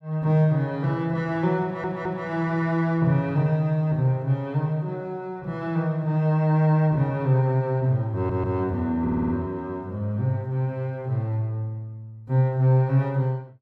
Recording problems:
audio stuttering; at 1.5 s, at 8 s and at 9 s

